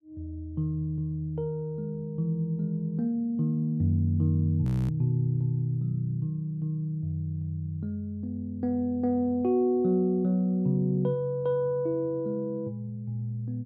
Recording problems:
frozen audio; at 4.5 s

